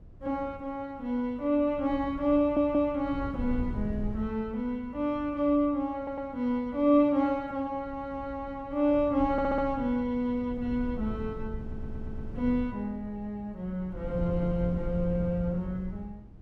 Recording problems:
wind on the microphone; below 130 Hz, SNR 12 dB
audio stuttering; 4 times, first at 2.5 s

